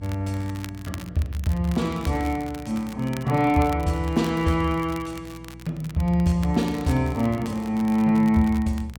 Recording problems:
hum; 60 Hz, harmonics up to 480 Hz, SNR 20 dB
crackling; vinyl, SNR 20 dB

